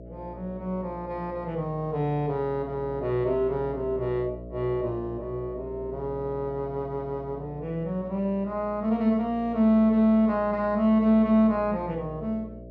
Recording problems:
electrical hum; 60 Hz, harmonics up to 660 Hz, SNR 16 dB

